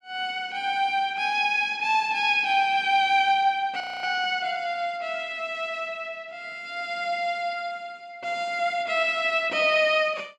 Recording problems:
audio freezing; at 4 s

